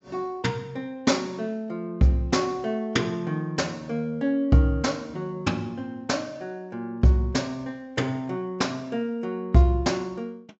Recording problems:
treble cut off; nothing above 7.7 kHz

